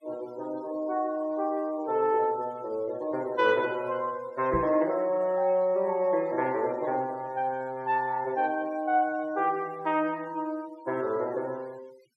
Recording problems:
noise reduction artefacts; signal-to-artefact ratio 24 dB
knock on the microphone; at 4.5 s; peak -2 dB vs average level

